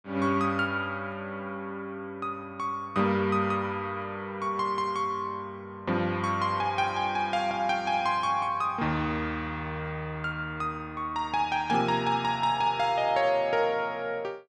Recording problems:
none

